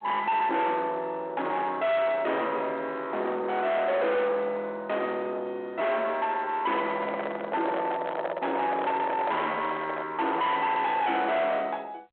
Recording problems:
phone line; 710 Hz to 3.4 kHz, G.726
distorted audio; soft clipping, signal-to-distortion ratio 6 dB
handling noise; from 7 to 10 s; peak +1 dB vs average level

